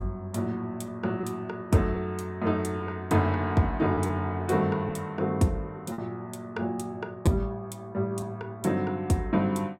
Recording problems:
packet loss; 1.8% of the sound replaced, filled with repeated pitch periods

